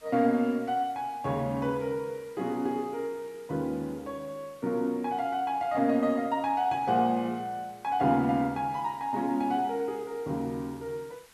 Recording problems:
background hiss; slope -1 dB per octave, SNR 26 dB

